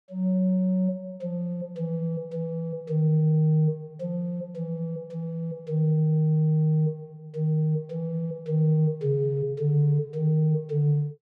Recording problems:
none

